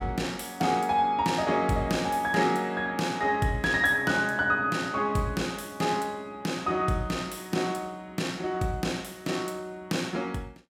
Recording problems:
none

